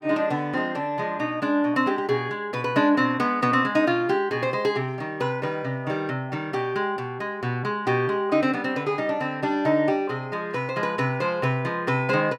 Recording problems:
none

